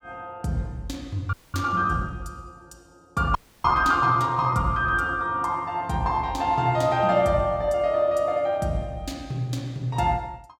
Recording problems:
frozen audio; at 1.5 s and at 3.5 s

